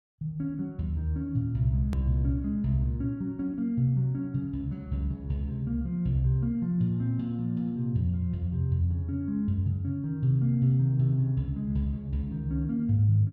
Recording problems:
click at an edit; at 2 s

